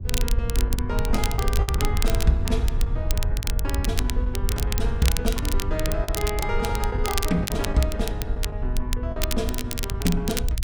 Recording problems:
low-frequency rumble; below 72 Hz, SNR -1 dB
crackling; vinyl, SNR 4 dB
lost packets; 6% of the sound replaced, filled with the last packet

